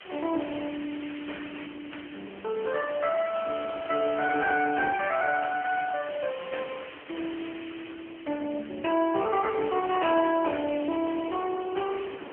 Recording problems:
telephone audio; 260 Hz to 3.1 kHz, AMR-NB
background hiss; SNR 16 dB
wind on the microphone; below 760 Hz, SNR 20 dB

